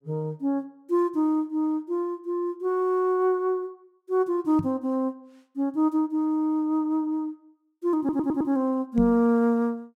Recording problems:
microphone bump; at 4.5 s and at 9 s; peak +1 dB vs average level
stutter; at 8 s

